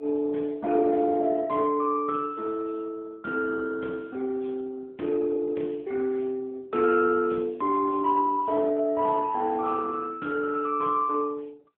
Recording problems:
phone line; 300 Hz to 3.8 kHz, AMR-NB

